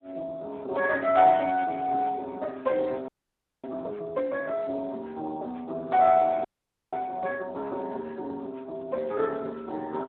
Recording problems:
phone line; 300 Hz to 3 kHz, Speex
audio freezing; at 3 s for 0.5 s and at 6.5 s

